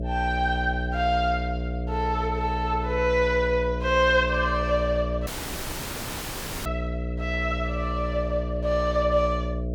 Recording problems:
electrical hum; 60 Hz, harmonics up to 660 Hz, SNR 5 dB
audio cutting out; at 5.5 s for 1.5 s

